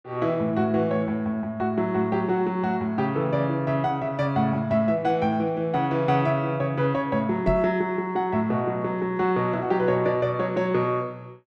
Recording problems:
knock on the microphone; at 7.5 s; peak 0 dB vs average level

